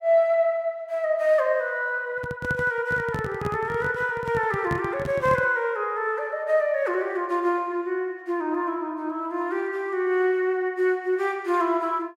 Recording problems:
handling noise; from 2 to 5.5 s; peak -1 dB vs average level

